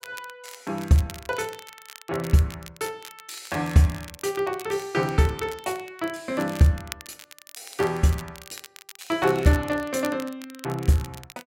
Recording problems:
crackle; vinyl, SNR 18 dB

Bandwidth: 16 kHz